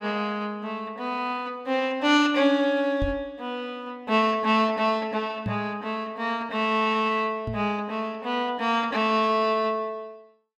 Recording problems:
microphone thump; at 3 s, at 5.5 s and at 7.5 s; peak -2 dB vs average level

